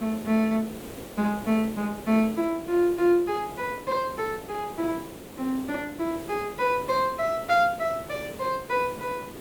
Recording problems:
hiss; SNR 14 dB

